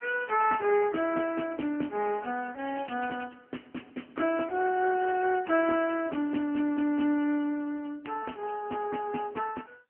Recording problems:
phone line; 220 Hz to 2.8 kHz, AMR-NB
crackle; at 2.5 s; loose cable, SNR 21 dB

